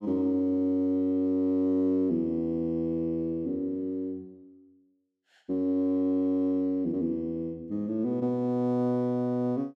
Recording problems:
none

